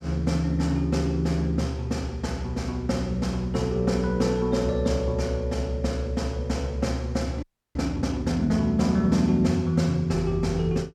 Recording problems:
frozen audio; at 7.5 s

